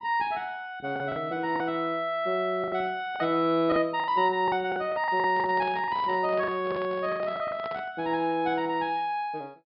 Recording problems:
low-pass filter; nothing above 5.5 kHz
lost packets; 9% of the sound replaced, filled with the last packet
microphone handling noise; from 5 to 8 s; peak -9 dB vs average level

